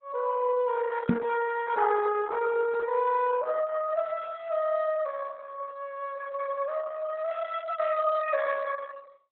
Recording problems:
lossy compression; Opus, log-spectral distance 3 dB
microphone bump; at 1 s; peak +7 dB vs average level

